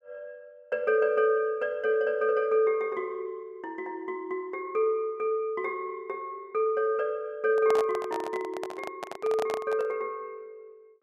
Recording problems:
microphone handling noise; from 7.5 to 10 s; peak -1 dB vs average level

